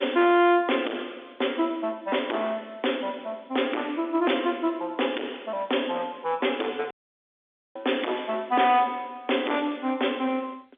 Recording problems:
phone line; 260 Hz to 3.6 kHz, G.711
distortion; hard clipping, signal-to-distortion ratio 7 dB
dropout; at 7 s for 1 s

